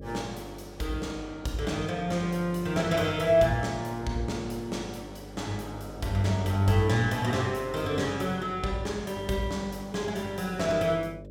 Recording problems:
electrical hum; 50 Hz, harmonics up to 600 Hz, SNR 16 dB

